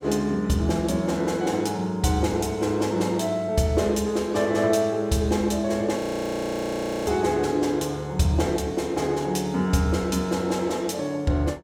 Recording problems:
audio freezing; at 6 s for 1 s

